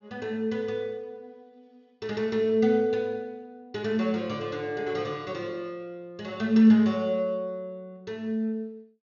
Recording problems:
treble cut off; nothing above 6.9 kHz

